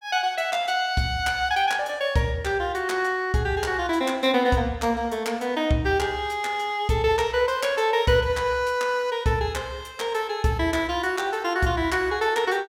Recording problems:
none

